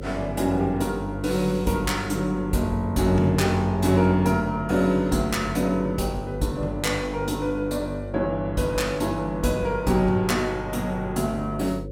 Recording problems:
electrical hum; 50 Hz, harmonics up to 550 Hz, SNR 11 dB

